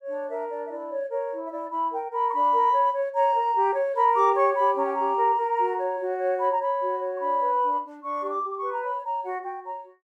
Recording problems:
none

